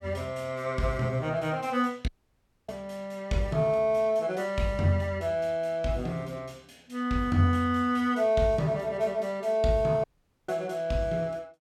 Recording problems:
audio cutting out; at 2 s for 0.5 s and at 10 s

